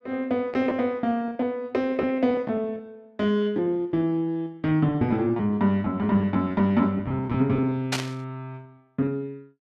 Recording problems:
lost packets; 13% of the sound replaced, filled with repeated pitch periods
burst of static; at 8 s; peak +3 dB vs average level

